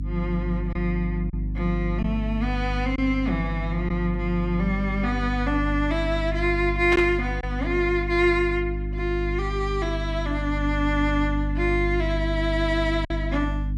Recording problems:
electrical hum; 50 Hz, harmonics up to 300 Hz, SNR 4 dB
lost packets; 1.2% of the sound replaced, filled with silence
static burst; at 7 s; peak -1 dB vs average level

